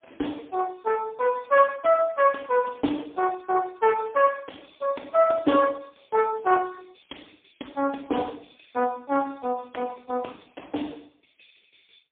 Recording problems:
telephone audio; 240 Hz to 2.6 kHz, AMR-NB, then MP3

